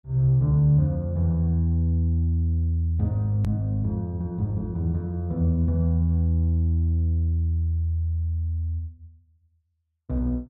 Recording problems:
edit click; at 3.5 s

